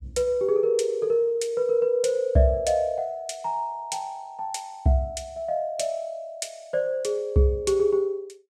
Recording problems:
none

